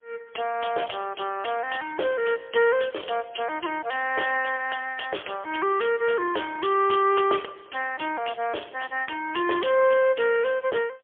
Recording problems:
telephone audio; 320 Hz to 2.9 kHz, AMR-NB, then MP3

